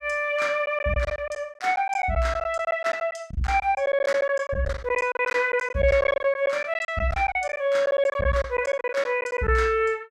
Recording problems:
packet loss; 13% of the sound replaced, filled with silence

